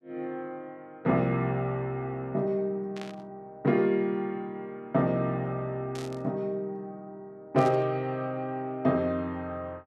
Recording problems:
static burst; at 3 s, at 6 s and at 7.5 s; peak -9 dB vs average level

